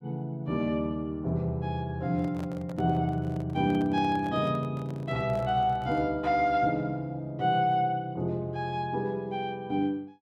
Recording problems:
microphone handling noise; from 2 to 6 s; peak -11 dB vs average level

